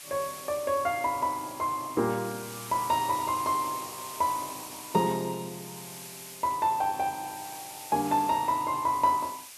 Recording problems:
background hiss; slope +3 dB per octave, SNR 12 dB

